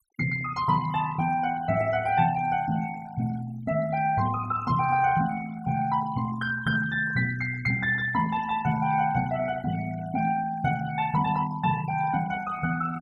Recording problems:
noise reduction artefacts; signal-to-artefact ratio 17 dB

